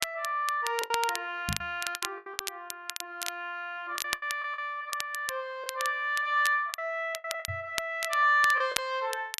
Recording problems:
crackle; vinyl, SNR 8 dB
packet loss; 12% of the sound replaced, filled with the last packet
microphone bump; at 1.5 s and at 7.5 s; peak -1 dB vs average level

